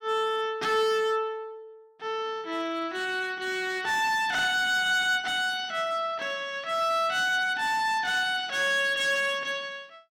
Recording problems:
distortion; hard clipping, signal-to-distortion ratio 11 dB

